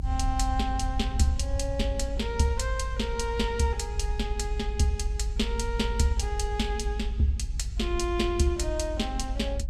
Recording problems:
low-frequency rumble; below 56 Hz, strongest tone 52 Hz, SNR 3 dB

